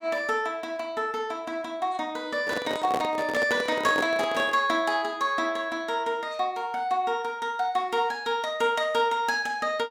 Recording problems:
microphone handling noise; from 2.5 to 4.5 s; peak +1 dB vs average level

